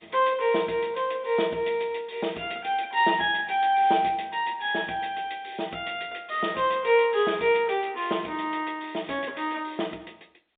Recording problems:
phone line; 220 Hz to 3.7 kHz, G.711

